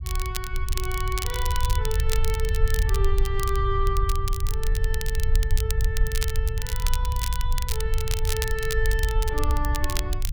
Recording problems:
rumble; below 68 Hz, SNR -5 dB
crackling; vinyl, SNR 3 dB

